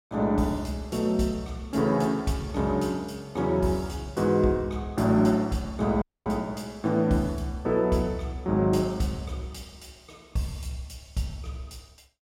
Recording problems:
dropout; at 6 s

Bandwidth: 16 kHz